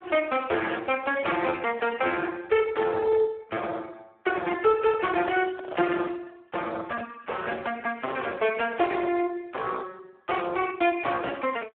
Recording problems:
phone line; 300 Hz to 3.5 kHz, Speex
distorted audio; soft clipping, signal-to-distortion ratio 10 dB
microphone handling noise; from 4.5 to 6 s; peak -5 dB vs average level

